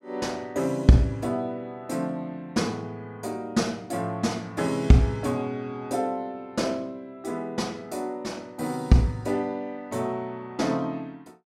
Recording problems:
none

